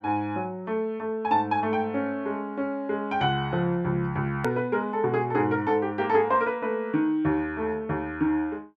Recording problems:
edit click; at 4.5 s

